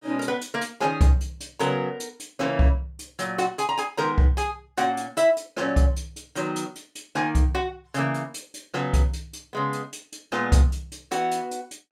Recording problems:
none

